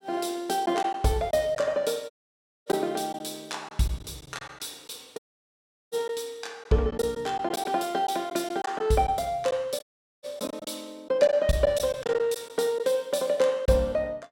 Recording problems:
packet loss; 5% of the sound replaced, filled with silence
dropout; at 2 s for 0.5 s, at 5 s for 0.5 s and at 10 s

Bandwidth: 17.5 kHz